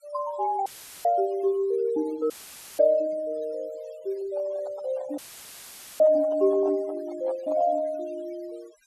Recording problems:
denoising artefacts; signal-to-artefact ratio 22 dB
dropout; at 0.5 s, at 2.5 s and at 5 s for 1 s; filled with static
handling noise; from 4 to 8 s; peak -7 dB vs average level

